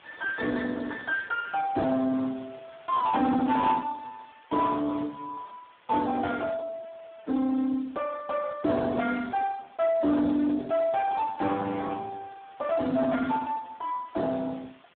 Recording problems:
phone line; 170 Hz to 3.6 kHz, Speex
distorted audio; soft clipping, signal-to-distortion ratio 12 dB
background hiss; SNR 27 dB

